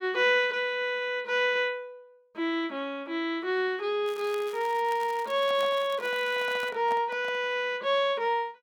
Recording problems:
crackle; from 4 to 6.5 s; loose cable, SNR 21 dB
microphone handling noise; from 5.5 to 7.5 s; peak -9 dB vs average level

